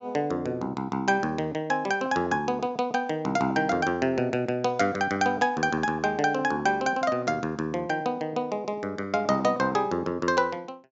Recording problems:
treble missing; nothing above 8 kHz

